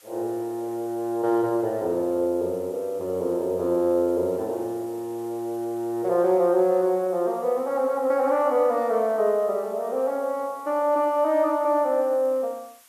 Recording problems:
hiss; SNR 27 dB

